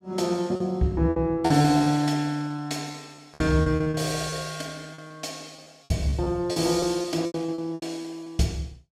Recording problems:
lost packets; 12% of the sound replaced, filled with repeated pitch periods

